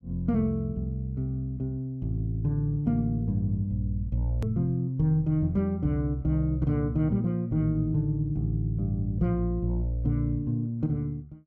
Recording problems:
edit click; at 4.5 s

